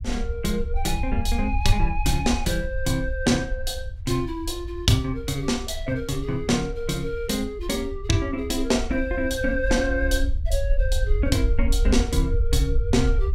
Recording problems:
low-frequency rumble; below 62 Hz, SNR 4 dB

